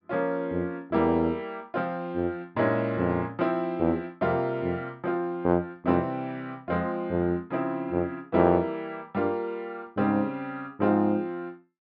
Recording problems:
treble cut off; nothing above 5.5 kHz

